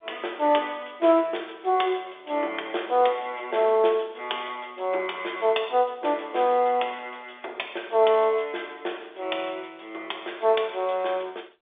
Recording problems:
phone line; 300 Hz to 3.6 kHz, G.711

